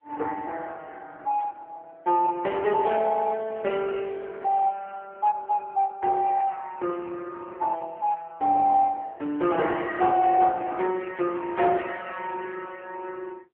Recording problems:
telephone audio; 240 Hz to 3.4 kHz, AMR-NB

